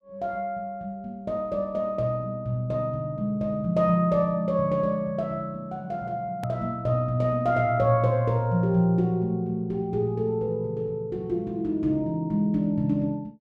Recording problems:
edit click; at 6.5 s

